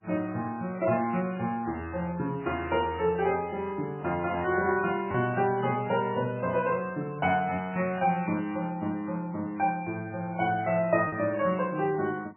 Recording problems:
lossy compression; MP3, log-spectral distance 3 dB, nothing above 2.5 kHz
lost packets; 0.8% of the sound replaced, filled with repeated pitch periods

